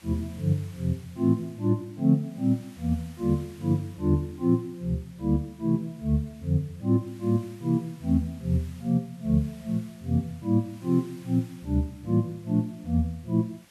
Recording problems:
background hiss; slope 0 dB per octave, SNR 27 dB

